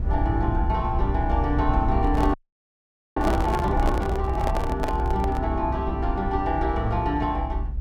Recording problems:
rumble; below 74 Hz, SNR 2 dB
handling noise; from 2 to 5.5 s; peak +1 dB vs average level
frozen audio; at 2.5 s for 1 s

